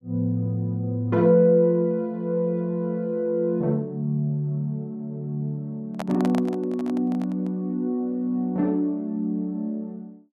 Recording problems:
handling noise; from 6 to 7.5 s; peak -4 dB vs average level

